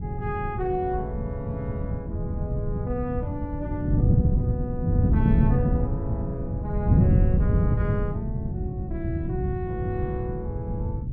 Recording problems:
wind on the microphone; below 160 Hz, SNR -6 dB

